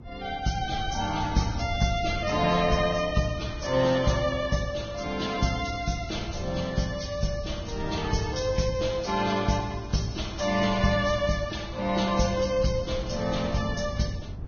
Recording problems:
lossy codec; Vorbis, log-spectral distance 5 dB, nothing above 6.3 kHz
wind on the microphone; below 130 Hz, SNR 13 dB

